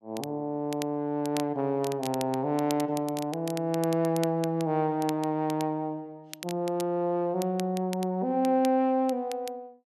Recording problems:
crackling; vinyl, SNR 16 dB

